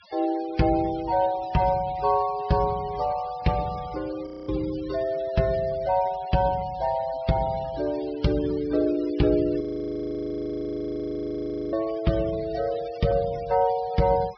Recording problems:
treble missing; nothing above 5.5 kHz
denoising artefacts; signal-to-artefact ratio 20 dB
audio freezing; at 4.5 s and at 9.5 s for 2 s

